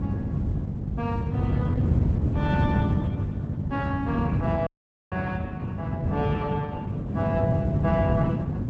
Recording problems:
lossy codec; Opus, log-spectral distance 2 dB
hum; 50 Hz, harmonics up to 550 Hz, SNR 5 dB
wind noise; below 200 Hz, SNR -5 dB
dropout; at 4.5 s

